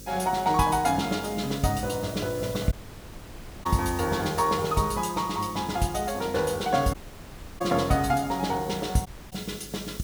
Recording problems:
mains hum; 50 Hz, harmonics up to 550 Hz, SNR 21 dB
hiss; slope +4 dB per octave, SNR 17 dB
dropout; at 2.5 s for 1 s, at 7 s for 0.5 s and at 9 s

